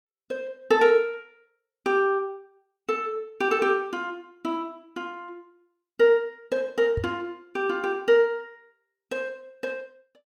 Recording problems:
microphone thump; at 7 s; peak -1 dB vs average level

